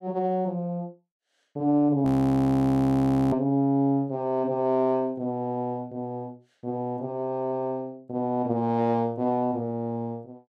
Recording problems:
audio freezing; at 2 s for 1.5 s

